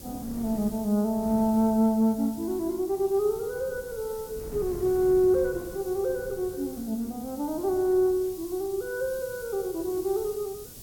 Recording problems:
background hiss; SNR 18 dB
wind noise; below 280 Hz, SNR 19 dB

